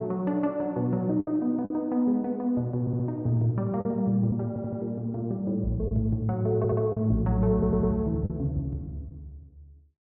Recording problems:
packet loss; 3% of the sound replaced, filled with the last packet
audio stuttering; 4 times, first at 3 s

